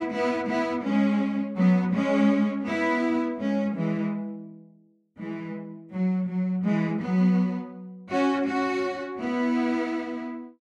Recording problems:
none

